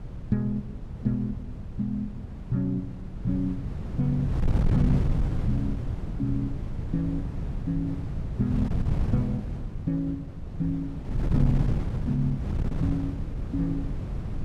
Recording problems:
wind on the microphone; below 150 Hz, SNR 1 dB

